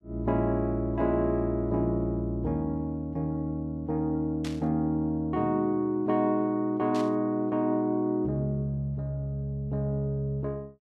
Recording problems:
static burst; at 4.5 s and at 7 s; peak -8 dB vs average level

